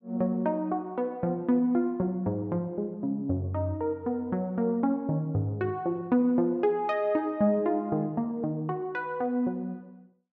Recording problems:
none

